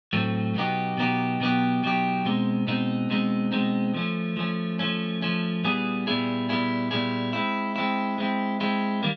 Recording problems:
none

